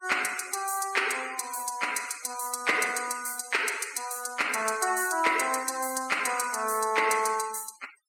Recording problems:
denoising artefacts; signal-to-artefact ratio 17 dB

